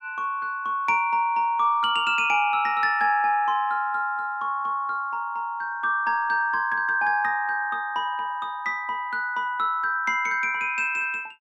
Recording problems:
none

